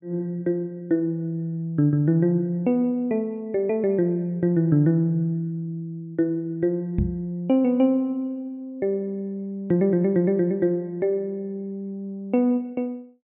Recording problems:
treble missing; nothing above 4 kHz
knock on the microphone; at 7 s; peak +4 dB vs average level

